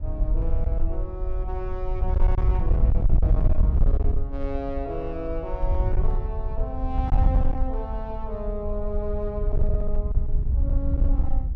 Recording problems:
distortion; hard clipping, signal-to-distortion ratio 12 dB
wind on the microphone; below 66 Hz, SNR -7 dB

